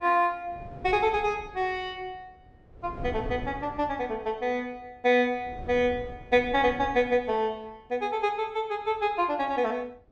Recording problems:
wind noise; below 320 Hz, SNR 16 dB

